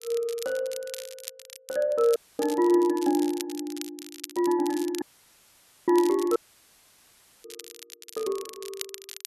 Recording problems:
crackle; vinyl, SNR 15 dB
dropout; at 2 s, at 5 s for 1 s and at 6.5 s for 1 s

